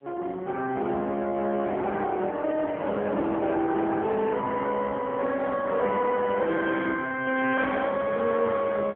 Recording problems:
phone line; 340 Hz to 3.1 kHz, AMR-NB
distortion; hard clipping, signal-to-distortion ratio 14 dB

